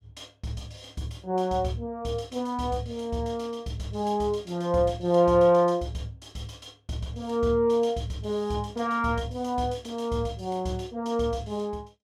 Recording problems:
none

